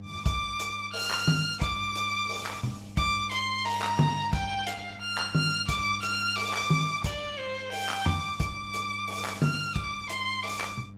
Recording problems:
lossy compression; Opus, log-spectral distance 5 dB
hum; 50 Hz, harmonics up to 600 Hz, SNR 15 dB

